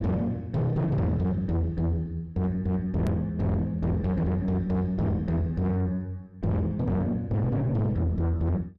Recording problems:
distortion; soft clipping, signal-to-distortion ratio 6 dB
hard cut with a click; at 3 s

